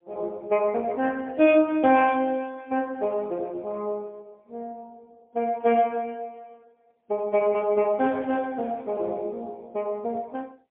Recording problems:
telephone audio; 240 Hz to 3.4 kHz, AMR-NB, then MP3

